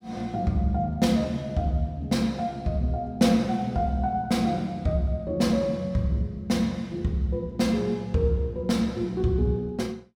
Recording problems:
none

